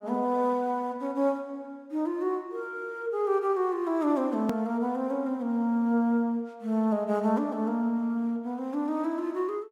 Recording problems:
edit click; at 4.5 s

